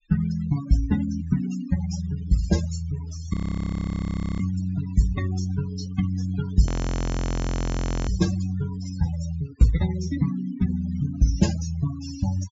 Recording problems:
low-pass filter; nothing above 7.4 kHz
noise reduction artefacts; signal-to-artefact ratio 13 dB
frozen audio; at 3.5 s for 1 s and at 6.5 s for 1.5 s

